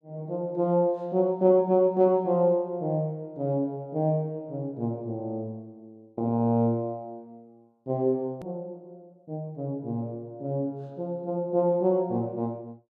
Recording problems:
hard cut with a click; at 8.5 s

